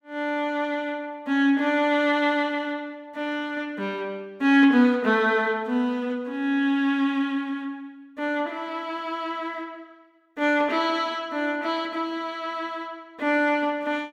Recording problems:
none

